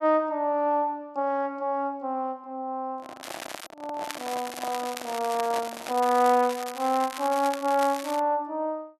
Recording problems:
microphone handling noise; from 3 to 6 s; peak -6 dB vs average level
crackling; at 3 s and from 4 to 8 s; loose cable, SNR 12 dB

